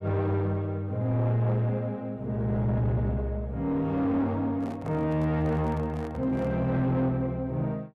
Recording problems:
distortion; soft clipping, signal-to-distortion ratio 11 dB
microphone handling noise; from 4.5 to 6.5 s; peak -9 dB vs average level

